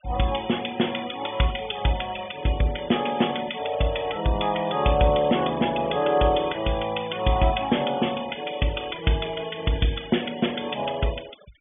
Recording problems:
low-pass filter; nothing above 3.5 kHz
noise reduction artefacts; signal-to-artefact ratio 18 dB

